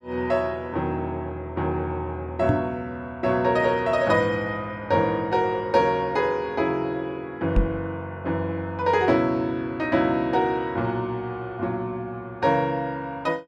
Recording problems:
microphone thump; at 2.5 s and at 7.5 s; peak +6 dB vs average level

